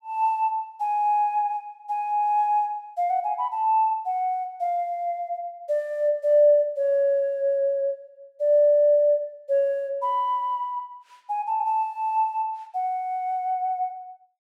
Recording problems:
none

